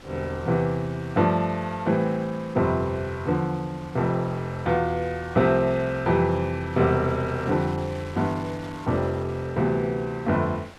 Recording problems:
wind noise; below 2.8 kHz, SNR 20 dB

